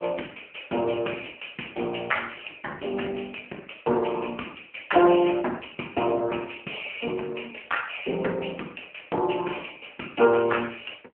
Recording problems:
telephone audio; 260 Hz to 3.1 kHz, AMR-NB

